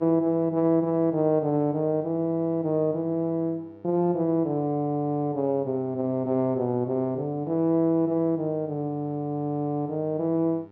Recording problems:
hum; 50 Hz, harmonics up to 1.9 kHz, SNR 26 dB

